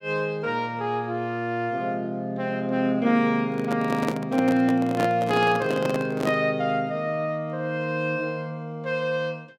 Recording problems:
microphone handling noise; from 3.5 to 6.5 s; peak +2 dB vs average level

